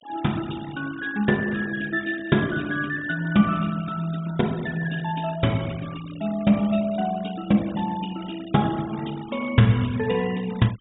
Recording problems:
low-pass filter; nothing above 4 kHz
noise reduction artefacts; signal-to-artefact ratio 19 dB

